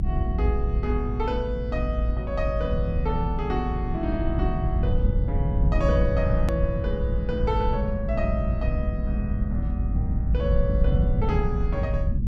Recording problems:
low-frequency rumble; below 100 Hz, SNR -3 dB
click at an edit; at 6.5 s

